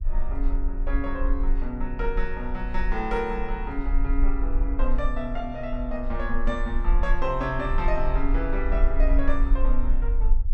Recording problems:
rumble; below 38 Hz, strongest tone 18 Hz, SNR -2 dB

